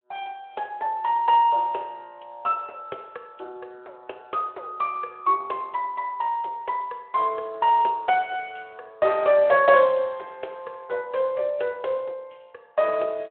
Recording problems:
phone line; 340 Hz to 3.4 kHz, Speex

